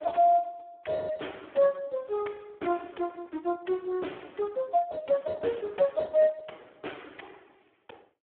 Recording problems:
phone line; 220 Hz to 3.4 kHz, Speex

